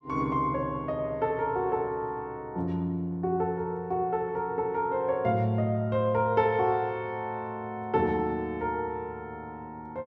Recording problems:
none

